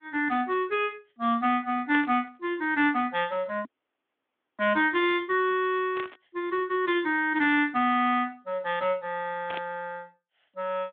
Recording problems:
telephone audio; 220 Hz to 3.7 kHz, Speex
static burst; at 2 s, at 6 s and at 9.5 s; peak -5 dB vs average level
dropout; at 3.5 s for 1 s

